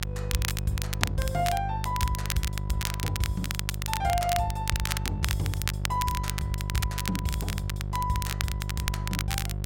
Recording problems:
electrical hum; 50 Hz, harmonics up to 550 Hz, SNR 1 dB
crackling; vinyl, SNR 2 dB

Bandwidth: 16.5 kHz